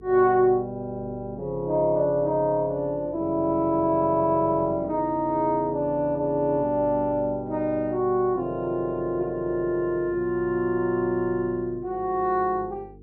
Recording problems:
hum; 50 Hz, harmonics up to 450 Hz, SNR 22 dB

